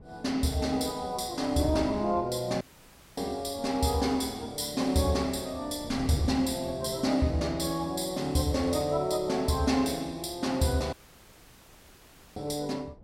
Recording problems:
wind noise; below 340 Hz, SNR 18 dB
audio cutting out; at 2.5 s for 0.5 s and at 11 s for 1.5 s

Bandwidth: 16 kHz